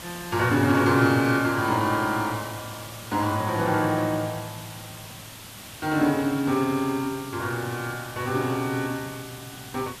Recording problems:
background hiss; slope -1 dB per octave, SNR 15 dB

